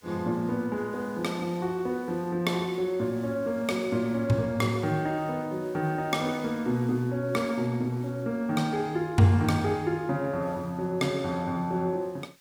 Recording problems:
background hiss; slope +1 dB per octave, SNR 28 dB

